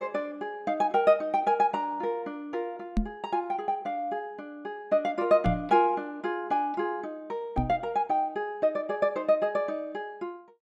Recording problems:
microphone bump; at 3 s, at 5.5 s and at 7.5 s; peak +5 dB vs average level

